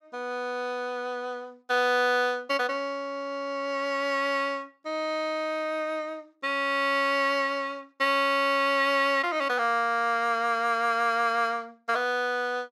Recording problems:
none

